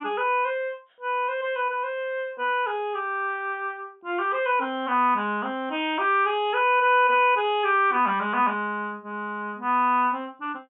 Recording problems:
treble missing; nothing above 3.7 kHz

